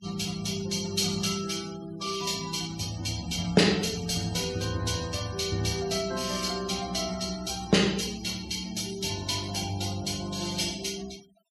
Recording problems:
noise reduction artefacts; signal-to-artefact ratio 15 dB

